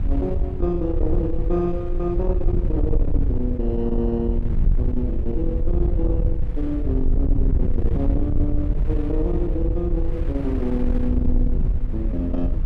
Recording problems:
distorted audio; soft clipping, signal-to-distortion ratio 11 dB
low-frequency rumble; below 70 Hz, SNR -2 dB
wind on the microphone; below 740 Hz, SNR 18 dB

